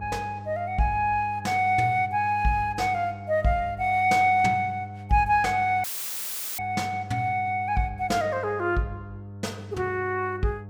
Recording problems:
hum; 50 Hz, harmonics up to 700 Hz, SNR 15 dB
audio cutting out; at 6 s for 1 s; filled with static

